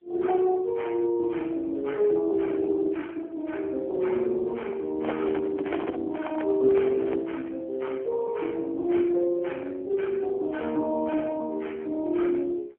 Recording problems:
telephone audio; 280 Hz to 2.3 kHz, AMR-NB
microphone handling noise; from 5 to 7.5 s; peak 0 dB vs average level

